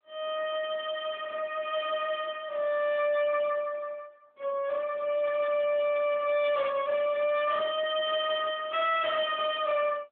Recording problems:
phone line; 430 Hz to 2.6 kHz, AMR-NB
distortion; hard clipping, signal-to-distortion ratio 11 dB

